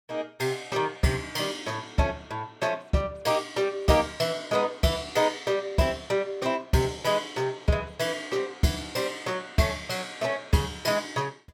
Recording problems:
none

